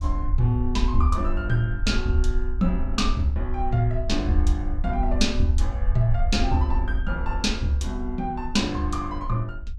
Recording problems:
low-frequency rumble; below 58 Hz, SNR 3 dB

